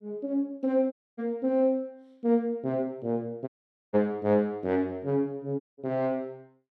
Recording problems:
audio cutting out; at 1 s, at 3.5 s and at 5.5 s

